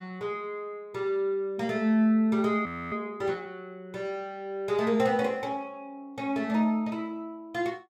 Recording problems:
frozen audio; at 2.5 s

